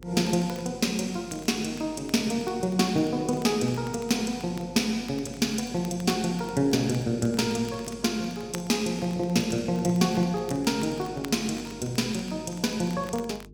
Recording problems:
electrical hum; 50 Hz, harmonics up to 450 Hz, SNR 23 dB
crackle; vinyl, SNR 22 dB

